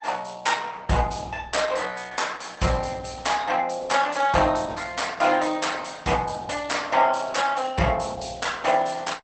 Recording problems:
lossy compression; Opus, log-spectral distance 6 dB, nothing above 8.2 kHz

